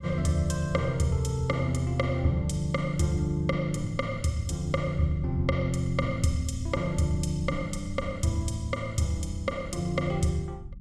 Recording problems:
rumble; below 100 Hz, SNR 14 dB

